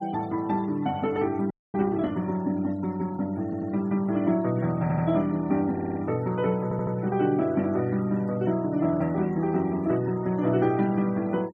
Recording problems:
denoising artefacts; signal-to-artefact ratio 24 dB
audio freezing; at 1.5 s
stutter; 4 times, first at 3.5 s

